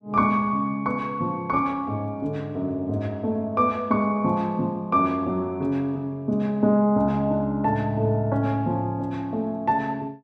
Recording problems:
none

